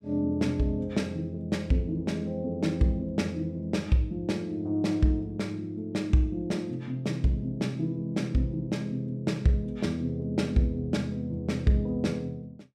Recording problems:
none

